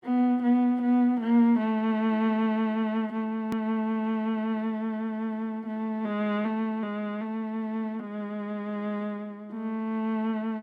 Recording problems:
click at an edit; at 3.5 s

